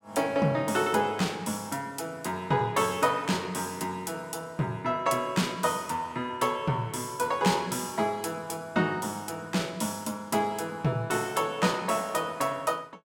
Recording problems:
none

